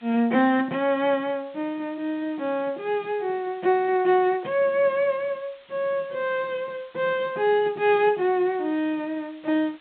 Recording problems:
treble cut off; nothing above 4 kHz
background hiss; SNR 28 dB

